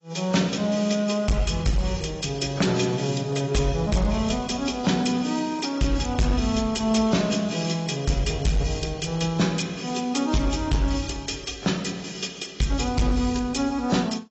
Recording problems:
lossy compression; AAC, log-spectral distance 5 dB, nothing above 7.6 kHz
distorted audio; hard clipping, signal-to-distortion ratio 11 dB

